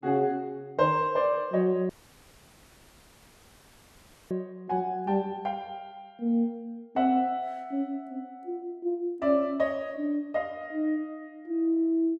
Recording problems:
dropout; at 2 s for 2.5 s

